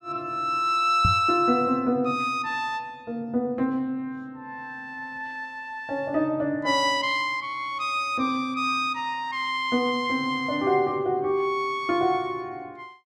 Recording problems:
knock on the microphone; at 1 s; peak +4 dB vs average level

